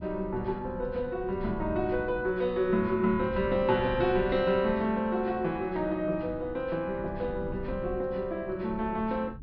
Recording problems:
treble missing; nothing above 5.5 kHz
rumble; below 160 Hz, SNR 14 dB

